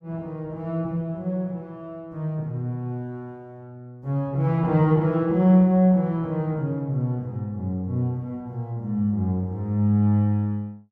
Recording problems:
none

